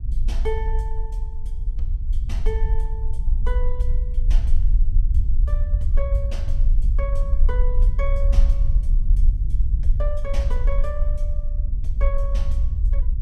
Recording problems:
low-frequency rumble; below 50 Hz, SNR -11 dB

